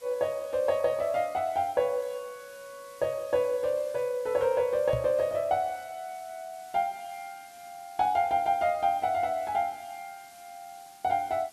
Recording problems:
background hiss; SNR 24 dB
microphone thump; at 5 s; peak -2 dB vs average level

